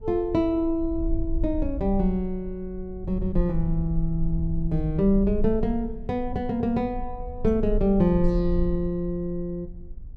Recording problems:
rumble; below 48 Hz, SNR 8 dB

